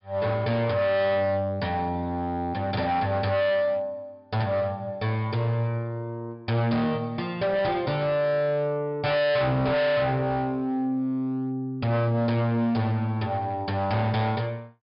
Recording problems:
treble missing; nothing above 5.5 kHz
distortion; hard clipping, uneven, signal-to-distortion ratio 6 dB

